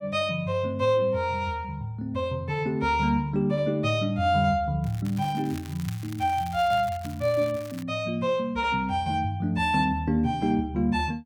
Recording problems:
crackling; from 5 to 8 s; loose cable, SNR 20 dB

